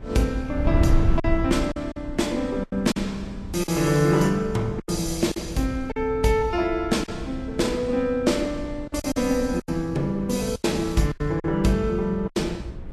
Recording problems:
lossy compression; Vorbis, log-spectral distance 2 dB, nothing above 12.7 kHz
hum; 60 Hz, harmonics up to 540 Hz, SNR 20 dB
wind noise; below 110 Hz, SNR 9 dB
lost packets; 8% of the sound replaced, filled with silence

